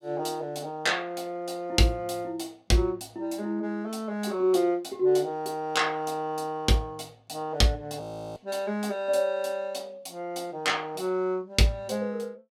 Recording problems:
audio freezing; at 8 s

